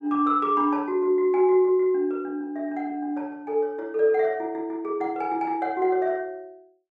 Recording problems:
none

